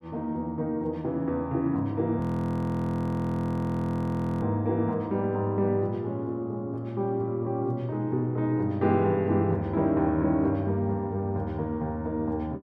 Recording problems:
audio freezing; at 2 s for 2 s

